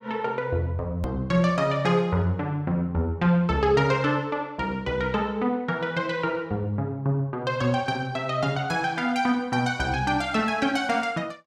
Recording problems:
click at an edit; at 1 s

